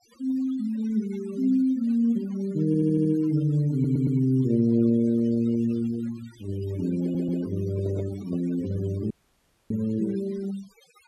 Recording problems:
denoising artefacts; signal-to-artefact ratio 19 dB
audio stuttering; at 2.5 s, at 3.5 s and at 7 s
handling noise; from 6.5 to 8.5 s; peak -8 dB vs average level
audio cutting out; at 9 s for 0.5 s

